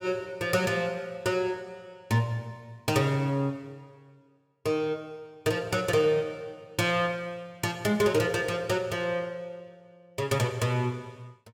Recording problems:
none

